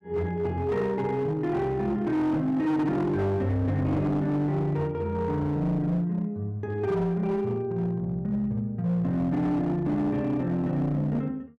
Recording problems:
distortion; hard clipping, signal-to-distortion ratio 10 dB

